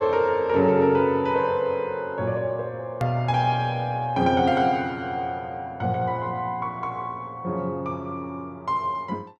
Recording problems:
hard cut with a click; at 3 s

